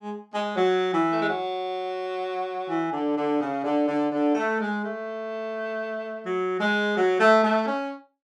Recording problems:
none

